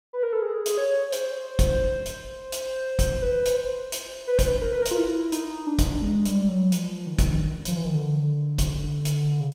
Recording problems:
none

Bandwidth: 16 kHz